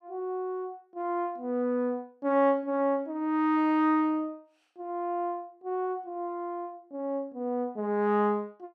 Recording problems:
none

